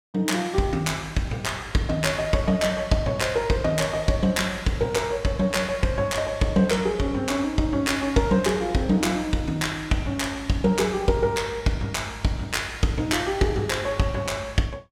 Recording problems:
none

